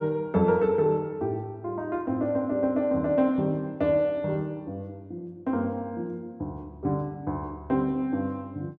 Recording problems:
none

